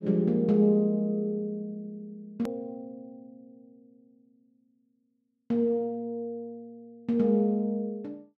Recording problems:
click at an edit; at 2.5 s

